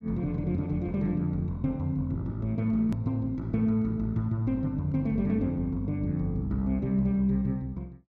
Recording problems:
hard cut with a click; at 3 s

